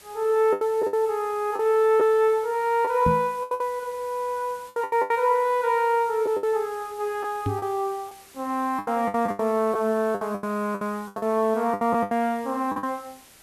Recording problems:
hiss; slope -1 dB per octave, SNR 24 dB
packet loss; 12% of the sound replaced, filled with the last packet
microphone thump; at 3 s and at 7.5 s; peak +2 dB vs average level

